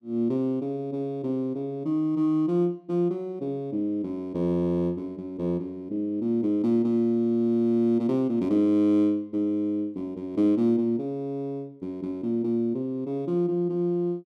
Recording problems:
none

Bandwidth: 12.5 kHz